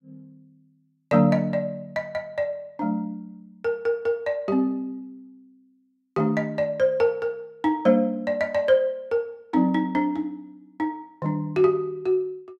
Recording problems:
none

